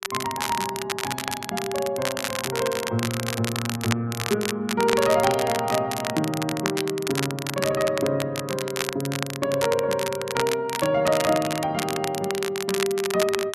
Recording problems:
crackle; vinyl, SNR 5 dB

